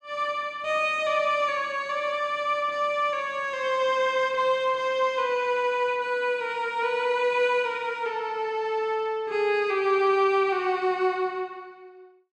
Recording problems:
none

